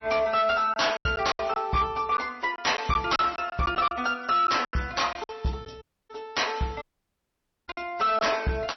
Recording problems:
codec artefacts; MP3, log-spectral distance 5 dB, nothing above 5.8 kHz
distortion; hard clipping, uneven, signal-to-distortion ratio 11 dB
packet loss; 7% of the sound replaced, filled with silence
audio cutting out; at 6 s and at 7 s for 1 s

